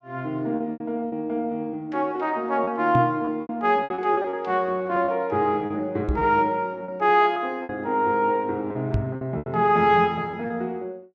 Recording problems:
packet loss; 9% of the sound replaced, filled with repeated pitch periods
knock on the microphone; at 3 s, at 6 s and at 9 s; peak +2 dB vs average level

